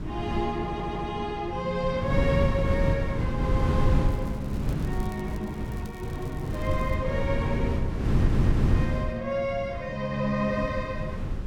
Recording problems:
wind on the microphone; below 180 Hz, SNR -2 dB
stutter; at 0.5 s and at 8 s
crackling; from 4 to 7 s; loose cable, SNR 23 dB

